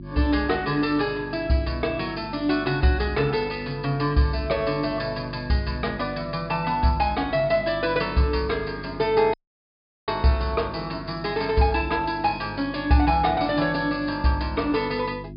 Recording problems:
low-pass filter; nothing above 5.1 kHz
hum; 50 Hz, harmonics up to 350 Hz, SNR 14 dB
audio cutting out; at 9.5 s for 0.5 s

